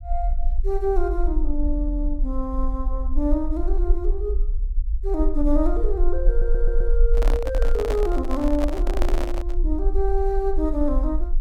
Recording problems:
low-frequency rumble; below 44 Hz, strongest tone 22 Hz, SNR -1 dB
stutter; at 6.5 s
microphone handling noise; from 7 to 9.5 s; peak +2 dB vs average level

